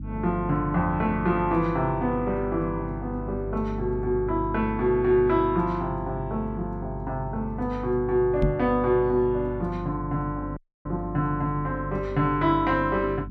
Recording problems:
hum; 50 Hz, harmonics up to 300 Hz, SNR 10 dB
knock on the microphone; at 8.5 s; peak +4 dB vs average level
audio cutting out; at 11 s

